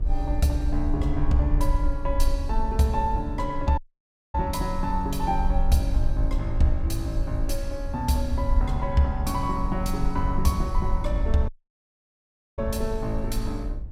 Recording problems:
low-frequency rumble; below 50 Hz, SNR 3 dB
wind on the microphone; below 120 Hz, SNR 12 dB
dropout; at 4 s for 0.5 s and at 11 s for 1 s

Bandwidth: 16 kHz